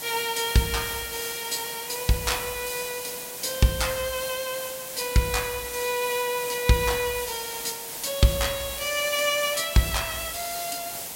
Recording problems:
background hiss; SNR 6 dB

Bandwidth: 16 kHz